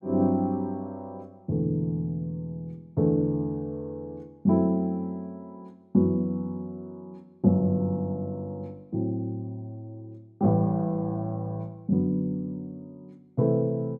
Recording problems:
none

